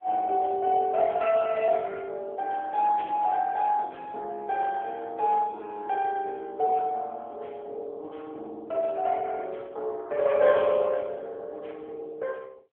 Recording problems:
phone line; 340 Hz to 3.4 kHz, AMR-NB
static burst; at 3 s; peak -13 dB vs average level

